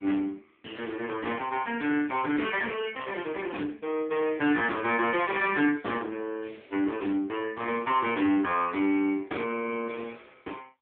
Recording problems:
telephone audio; 220 Hz to 3.4 kHz, AMR-NB
distortion; soft clipping, signal-to-distortion ratio 12 dB

